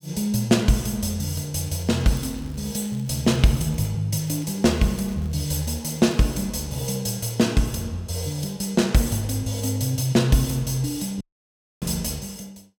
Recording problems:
crackle; from 1.5 to 4 s and from 4 to 6.5 s; loose cable, SNR 26 dB
audio cutting out; at 11 s for 0.5 s

